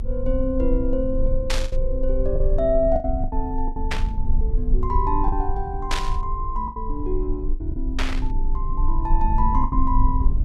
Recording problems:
rumble; below 46 Hz, strongest tone 24 Hz, SNR 0 dB
lost packets; 7% of the sound replaced, filled with the last packet
static burst; 4 times, first at 1.5 s; peak +4 dB vs average level

